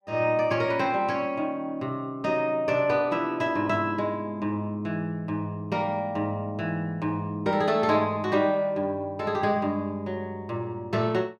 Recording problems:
none

